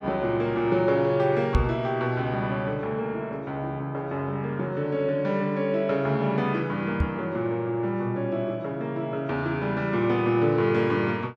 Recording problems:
knock on the microphone; at 1.5 s and at 7 s; peak +6 dB vs average level

